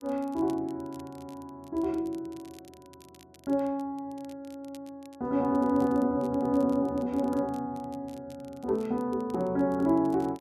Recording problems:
crackling; vinyl, SNR 29 dB

